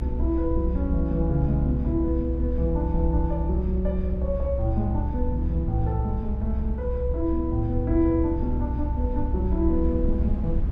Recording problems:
mains hum; 50 Hz, harmonics up to 1.6 kHz, SNR 24 dB
rumble; below 66 Hz, strongest tone 64 Hz, SNR 0 dB

